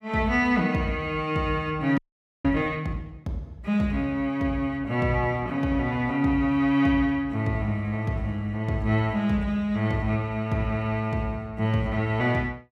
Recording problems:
frozen audio; at 2 s

